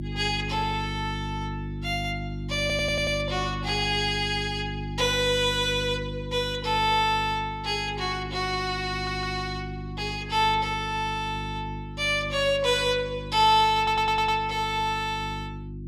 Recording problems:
hum; 50 Hz, harmonics up to 350 Hz, SNR 10 dB
audio stuttering; at 2.5 s, at 9 s and at 14 s

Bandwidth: 16 kHz